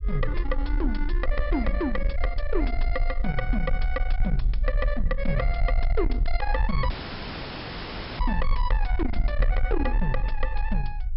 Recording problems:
treble cut off; nothing above 5.4 kHz
distortion; soft clipping, signal-to-distortion ratio 10 dB
rumble; below 46 Hz, SNR -1 dB
audio cutting out; at 7 s for 1.5 s

